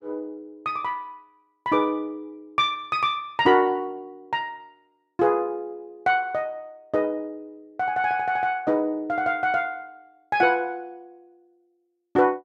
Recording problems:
none

